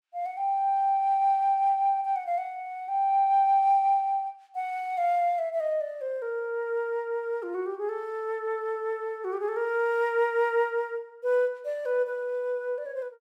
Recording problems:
none

